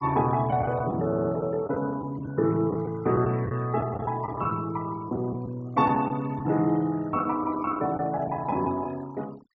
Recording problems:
treble cut off; nothing above 8 kHz
denoising artefacts; signal-to-artefact ratio 23 dB
lost packets; 7% of the sound replaced, filled with the last packet
audio stuttering; at 1 s

